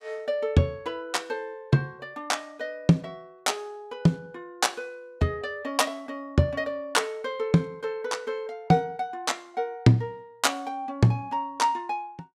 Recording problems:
none

